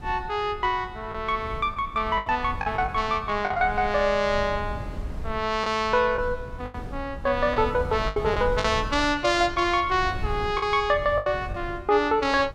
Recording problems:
wind noise; below 110 Hz, SNR 13 dB
packet loss; 6% of the sound replaced, filled with the last packet

